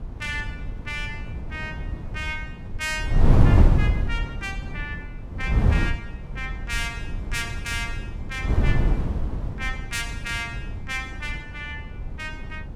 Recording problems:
wind on the microphone; below 130 Hz, SNR -5 dB

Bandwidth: 16 kHz